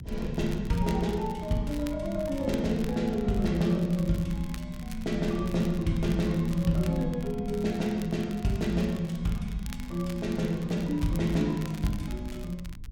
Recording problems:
rumble; below 94 Hz, SNR 13 dB
crackling; vinyl, SNR 20 dB

